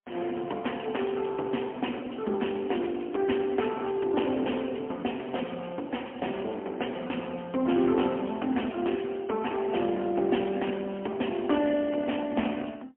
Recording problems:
telephone audio; 190 Hz to 3.3 kHz, AMR-NB, then MP3

